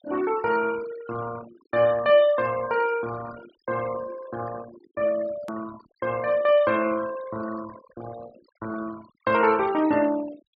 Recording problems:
treble missing; nothing above 5.5 kHz
noise reduction artefacts; signal-to-artefact ratio 16 dB
edit click; at 5.5 s

